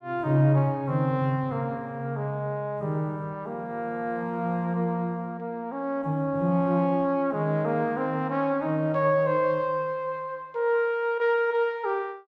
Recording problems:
none

